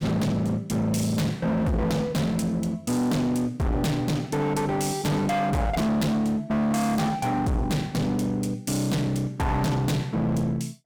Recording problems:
distorted audio; hard clipping, uneven, signal-to-distortion ratio 5 dB

